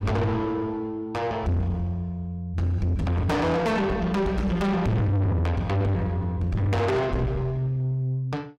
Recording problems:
distortion; soft clipping, signal-to-distortion ratio 6 dB

